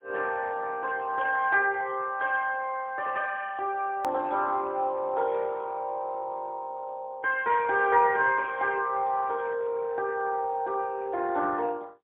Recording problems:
telephone audio; 260 Hz to 3.8 kHz, AMR-NB, then MP3
edit click; at 4 s

